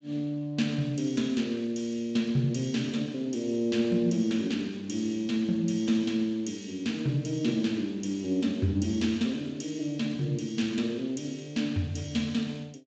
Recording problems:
lossy compression; Speex, log-spectral distance 3 dB, nothing above 7.3 kHz

